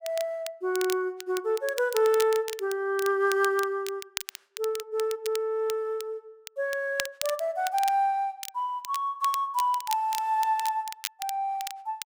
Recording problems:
crackling; vinyl, SNR 11 dB

